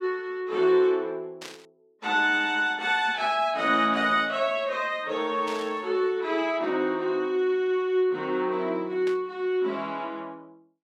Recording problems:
burst of static; at 1.5 s, at 5.5 s and at 9 s; peak -10 dB vs average level

